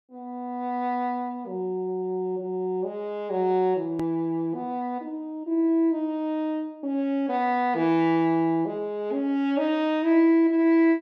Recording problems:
click at an edit; at 4 s

